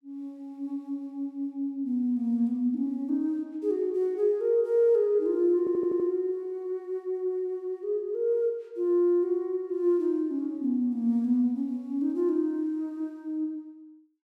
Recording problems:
audio stuttering; at 5.5 s

